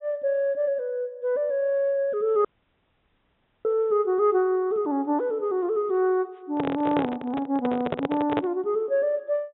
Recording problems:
treble cut off; nothing above 3.8 kHz
dropout; at 2.5 s for 1 s
microphone handling noise; from 6.5 to 8.5 s; peak +2 dB vs average level

